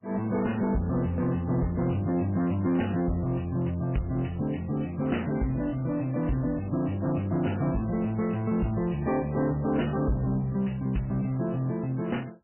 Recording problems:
lossy codec; MP3, log-spectral distance 5 dB, nothing above 3 kHz
distorted audio; soft clipping, signal-to-distortion ratio 11 dB

